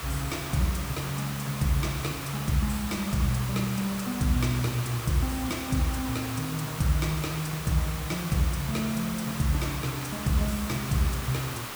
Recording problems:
hiss; SNR 7 dB

